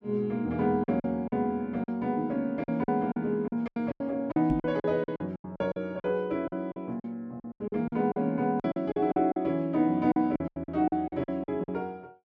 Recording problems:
packet loss; 15% of the sound replaced, filled with silence
microphone bump; at 4.5 s; peak +2 dB vs average level

